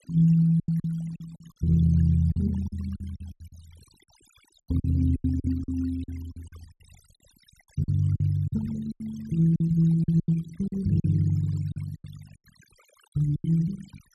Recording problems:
denoising artefacts; signal-to-artefact ratio 24 dB
lost packets; 14% of the sound replaced, filled with silence

